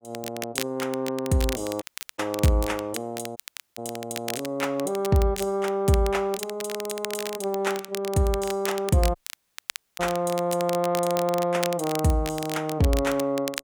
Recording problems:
crackle; vinyl, SNR 10 dB
dropout; at 2 s, at 3.5 s and at 9 s for 1 s

